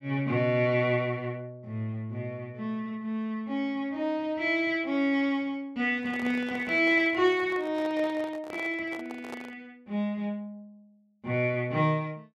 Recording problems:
handling noise; from 6 to 9.5 s; peak -8 dB vs average level

